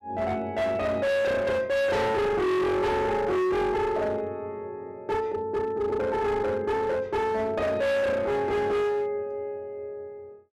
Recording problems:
distortion; hard clipping, signal-to-distortion ratio 6 dB

